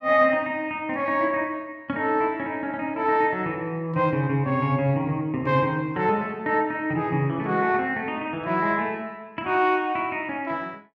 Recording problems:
none

